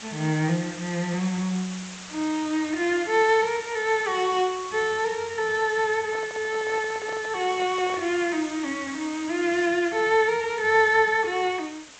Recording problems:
codec artefacts; G.722, log-spectral distance 13 dB
hiss; slope 0 dB per octave, SNR 15 dB
handling noise; from 6 to 8 s; peak -10 dB vs average level

